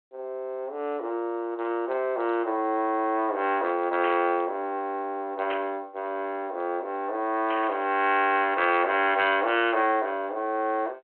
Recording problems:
telephone audio; 300 Hz to 3.2 kHz, G.726
static burst; at 4 s, at 5.5 s and at 7.5 s; peak -5 dB vs average level

